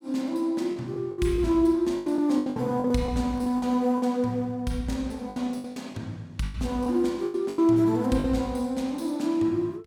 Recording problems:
packet loss; 11% of the sound replaced, filled with the last packet

